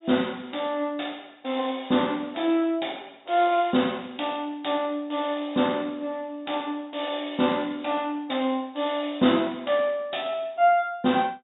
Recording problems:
low-pass filter; nothing above 4 kHz

